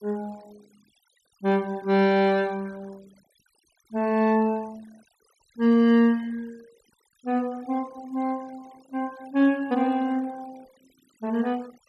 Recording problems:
denoising artefacts; signal-to-artefact ratio 26 dB

